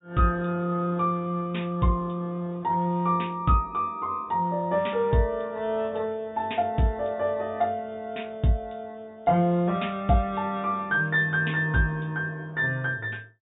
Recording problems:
low-pass filter; nothing above 3.7 kHz

